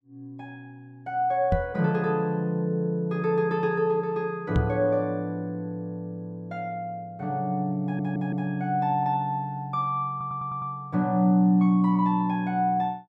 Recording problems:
microphone thump; at 1.5 s and at 4.5 s; peak +5 dB vs average level
stutter; at 8 s and at 10 s

